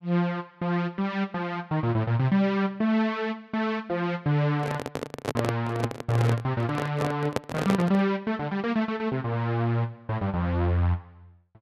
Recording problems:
handling noise; from 4.5 to 8 s; peak +4 dB vs average level

